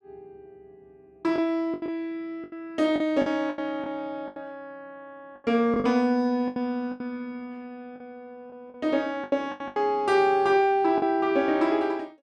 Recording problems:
packet loss; 10% of the sound replaced, filled with the last packet

